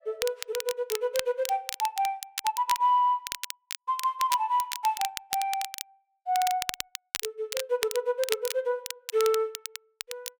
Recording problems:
crackle; vinyl, SNR 7 dB

